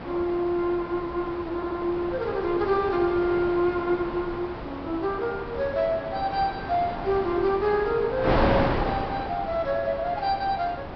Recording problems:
low-pass filter; nothing above 5.5 kHz
wind on the microphone; below 1 kHz, SNR 6 dB
audio stuttering; at 1.5 s

